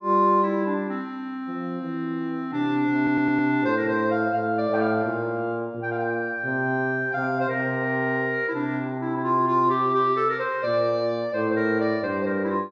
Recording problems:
audio stuttering; at 3 s

